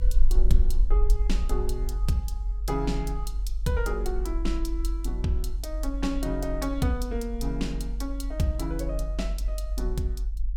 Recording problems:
low-frequency rumble; below 46 Hz, SNR -1 dB

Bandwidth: 17 kHz